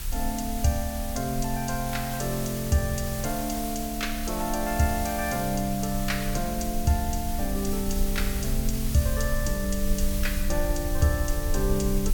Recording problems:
hiss; slope 0 dB per octave, SNR 7 dB
low-frequency rumble; below 56 Hz, strongest tone 26 Hz, SNR 6 dB

